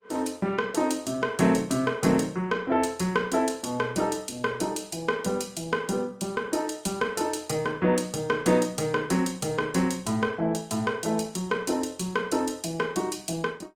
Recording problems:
codec artefacts; Opus, log-spectral distance 4 dB, nothing above 19 kHz

